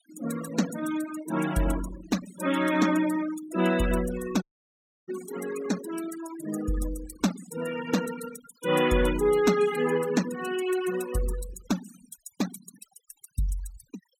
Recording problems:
denoising artefacts; signal-to-artefact ratio 12 dB
dropout; at 4.5 s for 0.5 s

